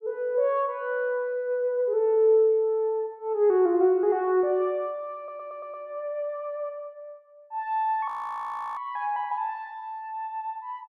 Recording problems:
stutter; at 5 s
frozen audio; at 8 s for 0.5 s

